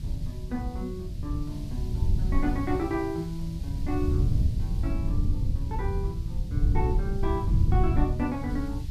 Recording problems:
hiss; SNR 20 dB
wind on the microphone; below 100 Hz, SNR -4 dB

